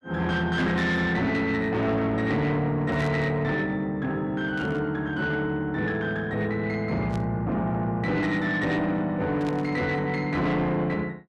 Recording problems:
distortion; soft clipping, signal-to-distortion ratio 11 dB
static burst; 4 times, first at 3 s; peak -11 dB vs average level

